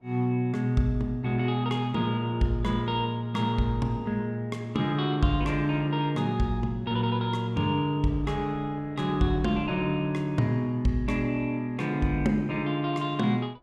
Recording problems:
wind noise; below 640 Hz, SNR 24 dB

